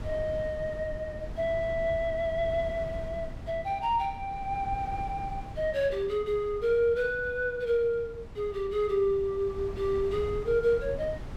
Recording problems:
wind noise; below 180 Hz, SNR 13 dB

